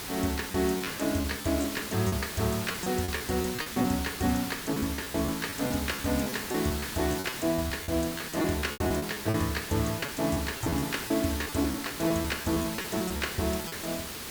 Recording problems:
background hiss; SNR 6 dB
packet loss; 12% of the sound replaced, filled with repeated pitch periods

